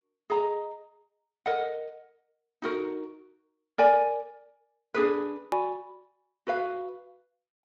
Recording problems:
codec artefacts; Speex, log-spectral distance 2 dB, nothing above 15.6 kHz
edit click; at 5.5 s

